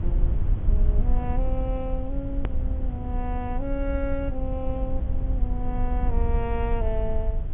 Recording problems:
treble cut off; nothing above 3.5 kHz
electrical hum; 60 Hz, harmonics up to 720 Hz, SNR 12 dB
hiss; SNR 27 dB
rumble; below 62 Hz, SNR -5 dB
click at an edit; at 2.5 s

